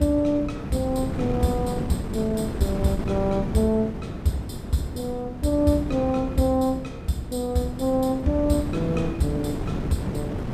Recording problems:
wind noise; below 320 Hz, SNR 6 dB

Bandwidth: 15.5 kHz